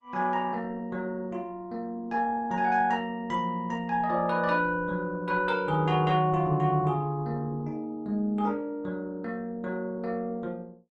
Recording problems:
lossy compression; Opus, log-spectral distance 2 dB

